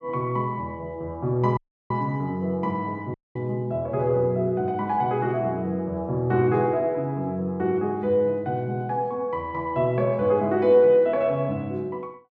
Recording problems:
audio cutting out; at 1.5 s and at 3 s

